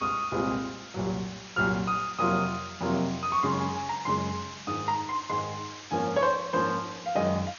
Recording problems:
codec artefacts; MP2, log-spectral distance 12 dB, nothing above 6.5 kHz
background hiss; slope +1 dB per octave, SNR 14 dB

